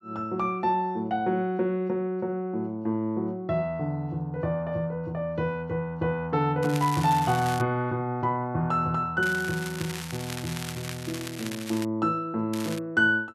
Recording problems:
crackling; at 6.5 s, from 9 to 12 s and at 13 s; loose cable, SNR 11 dB

